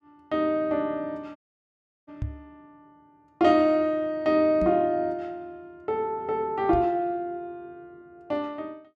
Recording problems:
audio cutting out; at 1.5 s for 0.5 s
microphone thump; at 2 s, at 4.5 s and at 6.5 s; peak -3 dB vs average level

